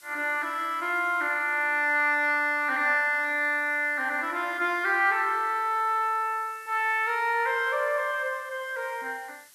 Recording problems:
hiss; SNR 27 dB

